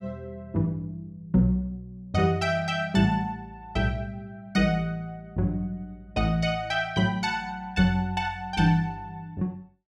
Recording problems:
none

